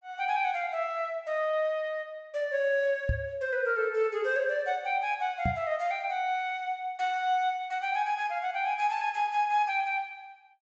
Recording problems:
low-pass filter; nothing above 8 kHz
microphone thump; at 3 s and at 5.5 s; peak +3 dB vs average level

